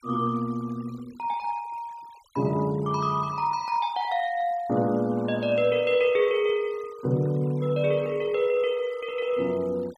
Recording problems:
noise reduction artefacts; signal-to-artefact ratio 24 dB

